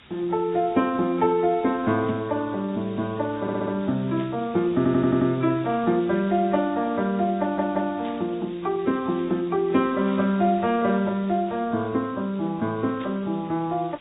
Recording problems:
treble missing; nothing above 3.4 kHz
lossy compression; AAC, log-spectral distance 5 dB
background hiss; SNR 23 dB
static burst; 5 times, first at 2 s; peak -15 dB vs average level
stutter; at 3.5 s, at 5 s and at 7.5 s

